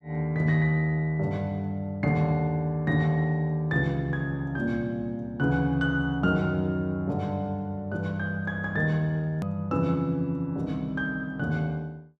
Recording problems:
hard cut with a click; at 9.5 s

